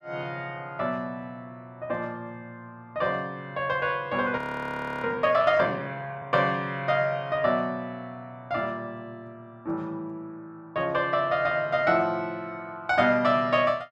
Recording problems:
frozen audio; at 4.5 s for 0.5 s

